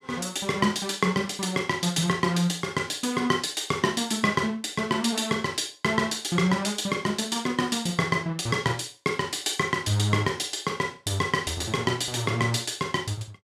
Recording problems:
none

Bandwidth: 14.5 kHz